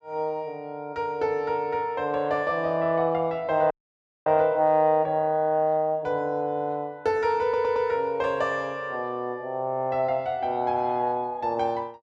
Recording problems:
audio cutting out; at 3.5 s for 0.5 s
stutter; at 7.5 s

